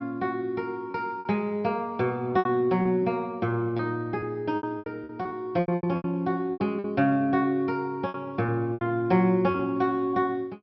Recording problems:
low-pass filter; nothing above 5.7 kHz
packet loss; 10% of the sound replaced, filled with repeated pitch periods

